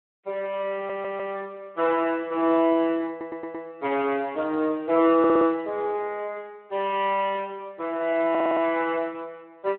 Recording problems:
telephone audio; 280 Hz to 3.5 kHz, Speex
audio stuttering; 4 times, first at 1 s

